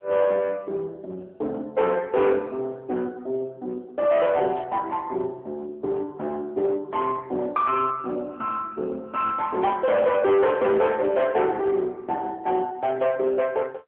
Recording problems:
telephone audio; 260 Hz to 3.6 kHz, AMR-NB
distorted audio; hard clipping, uneven, signal-to-distortion ratio 11 dB
static burst; at 4.5 s and at 11 s; peak -18 dB vs average level

